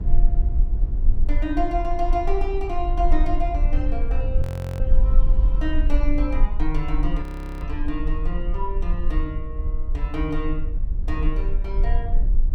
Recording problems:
low-frequency rumble; below 44 Hz, strongest tone 20 Hz, SNR -4 dB
frozen audio; at 4.5 s and at 7 s

